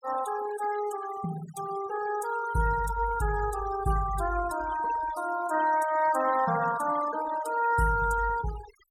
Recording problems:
noise reduction artefacts; signal-to-artefact ratio 14 dB

